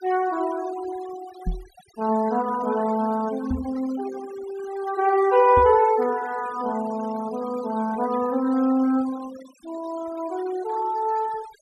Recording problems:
denoising artefacts; signal-to-artefact ratio 19 dB
microphone thump; at 1.5 s, at 3.5 s and at 5.5 s; peak 0 dB vs average level

